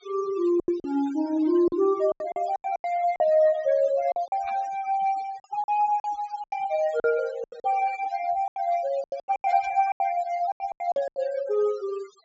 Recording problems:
low-pass filter; nothing above 8 kHz
noise reduction artefacts; signal-to-artefact ratio 19 dB
packet loss; 13% of the sound replaced, filled with silence
burst of static; 4 times, first at 4.5 s; peak -15 dB vs average level

